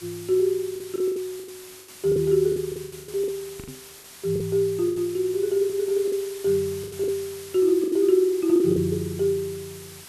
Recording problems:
hiss; slope 0 dB per octave, SNR 17 dB
lost packets; 12% of the sound replaced, filled with the last packet
knock on the microphone; at 3.5 s; peak -13 dB vs average level

